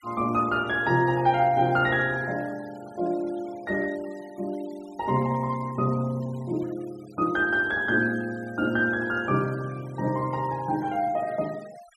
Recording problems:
denoising artefacts; signal-to-artefact ratio 24 dB

